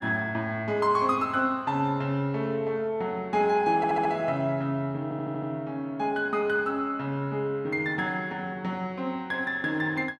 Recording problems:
stutter; at 4 s and at 5 s

